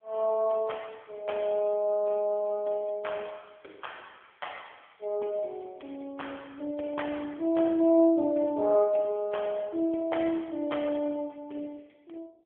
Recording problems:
telephone audio; 240 Hz to 3.3 kHz, AMR-NB

